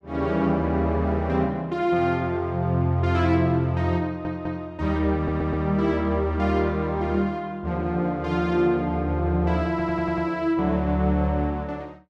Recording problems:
audio stuttering; at 4 s, at 5 s and at 9.5 s

